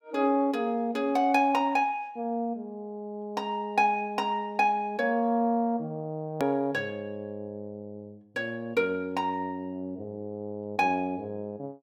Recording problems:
click at an edit; at 6.5 s

